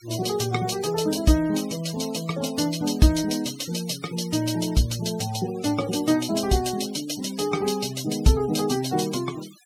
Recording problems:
noise reduction artefacts; signal-to-artefact ratio 16 dB

